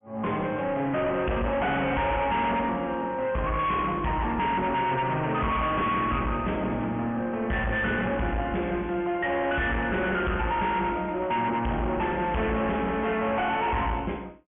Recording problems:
treble cut off; nothing above 3.2 kHz
distorted audio; hard clipping, uneven, signal-to-distortion ratio 5 dB

